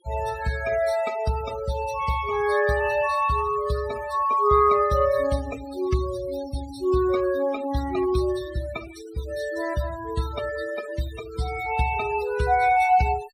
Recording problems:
denoising artefacts; signal-to-artefact ratio 15 dB

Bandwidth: 15.5 kHz